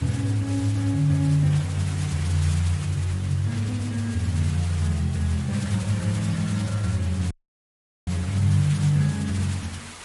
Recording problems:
lossy codec; MP3, then MP3, log-spectral distance 4 dB
background hiss; slope -1 dB per octave, SNR 15 dB
static burst; at 1.5 s, at 3.5 s and at 6.5 s; peak -14 dB vs average level
audio cutting out; at 7.5 s for 1 s

